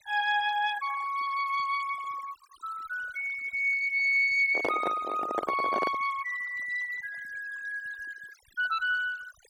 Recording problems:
denoising artefacts; signal-to-artefact ratio 16 dB
handling noise; from 4.5 to 6 s; peak +1 dB vs average level

